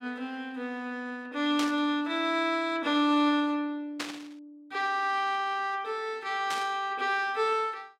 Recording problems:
burst of static; at 1.5 s, at 4 s and at 6.5 s; peak -1 dB vs average level

